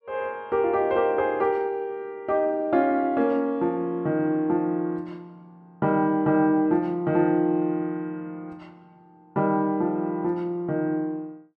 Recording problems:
none

